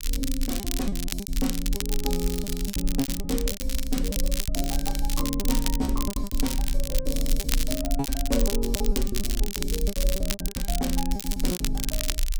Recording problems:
rumble; below 44 Hz, strongest tone 24 Hz, SNR 0 dB
crackling; vinyl, SNR 1 dB
packet loss; 15% of the sound replaced, filled with repeated pitch periods

